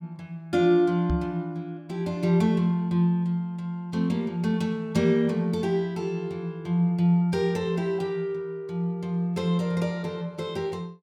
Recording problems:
microphone thump; at 1 s; peak +3 dB vs average level

